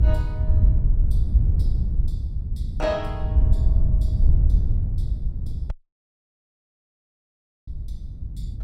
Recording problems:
low-frequency rumble; below 82 Hz, SNR 4 dB
wind on the microphone; below 78 Hz, SNR -10 dB
audio cutting out; at 5.5 s for 2 s

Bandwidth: 16.5 kHz